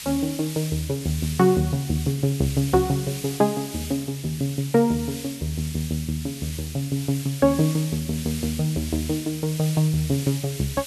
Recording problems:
background hiss; SNR 11 dB

